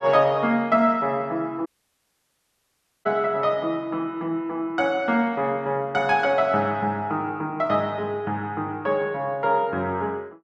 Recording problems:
audio cutting out; at 1.5 s for 1.5 s

